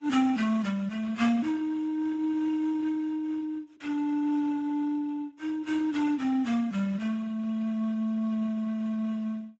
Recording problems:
lossy compression; AAC, then Speex, log-spectral distance 2 dB, nothing above 7.3 kHz

